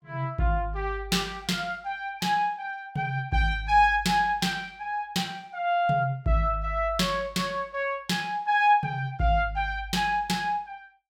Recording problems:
none

